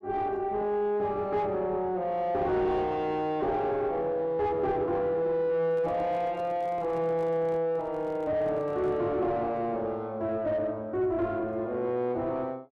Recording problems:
distortion; soft clipping, signal-to-distortion ratio 10 dB
handling noise; from 5.5 to 9 s; peak -10 dB vs average level

